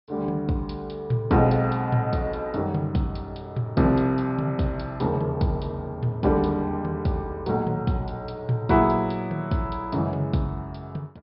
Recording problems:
low-pass filter; nothing above 5.5 kHz

